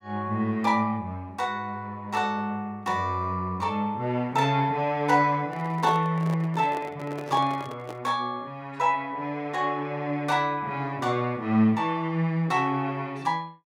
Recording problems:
microphone handling noise; from 5.5 to 8 s; peak -2 dB vs average level

